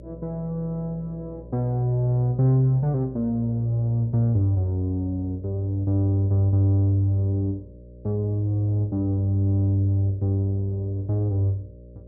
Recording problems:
hum; 60 Hz, harmonics up to 600 Hz, SNR 20 dB

